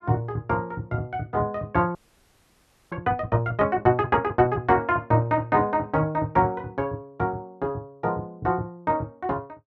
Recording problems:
frozen audio; at 2 s for 1 s

